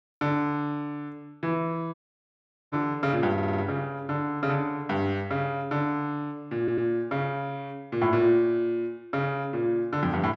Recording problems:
dropout; at 2 s for 1 s
stutter; at 3.5 s and at 6.5 s

